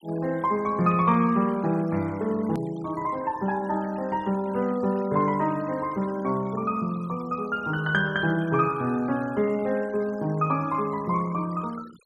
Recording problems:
noise reduction artefacts; signal-to-artefact ratio 23 dB
edit click; at 2.5 s

